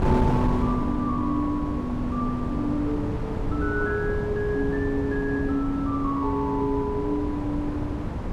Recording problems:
wind on the microphone; below 320 Hz, SNR 3 dB

